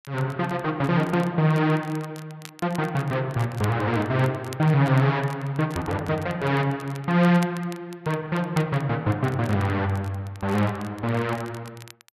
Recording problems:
crackle; vinyl, SNR 22 dB

